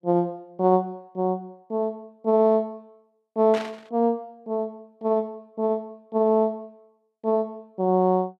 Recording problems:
static burst; at 3.5 s; peak -6 dB vs average level

